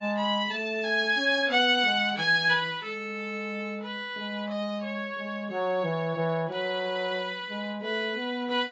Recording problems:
codec artefacts; AAC, log-spectral distance 2 dB, nothing above 7.3 kHz

